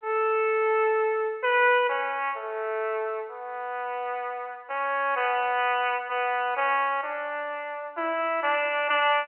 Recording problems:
telephone audio; 320 Hz to 3.1 kHz, G.711

